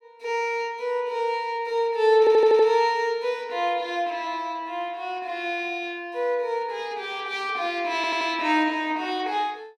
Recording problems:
stutter; at 2 s and at 8 s

